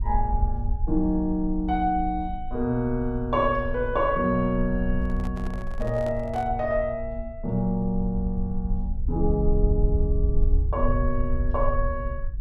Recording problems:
low-frequency rumble; below 64 Hz, SNR 4 dB
handling noise; from 5 to 6.5 s; peak -8 dB vs average level

